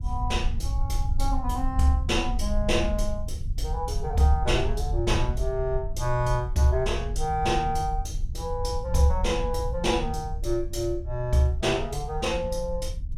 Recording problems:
low-frequency rumble; below 68 Hz, SNR 5 dB

